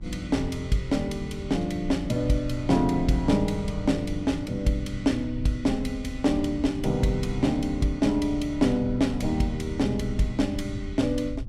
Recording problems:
hum; 60 Hz, harmonics up to 840 Hz, SNR 24 dB
low-frequency rumble; below 94 Hz, SNR 12 dB

